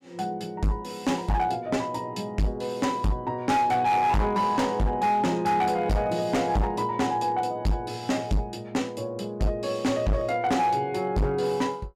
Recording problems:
distortion; hard clipping, signal-to-distortion ratio 7 dB

